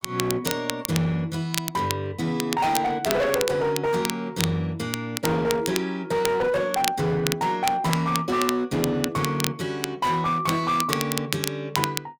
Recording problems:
distorted audio; hard clipping, uneven, signal-to-distortion ratio 10 dB
crackle; vinyl, SNR 6 dB

